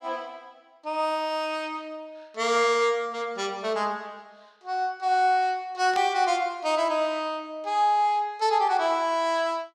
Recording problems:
burst of static; at 6 s; peak -6 dB vs average level

